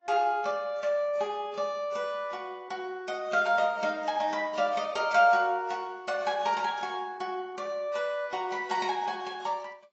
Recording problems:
codec artefacts; AAC, log-spectral distance 2 dB, nothing above 7.6 kHz

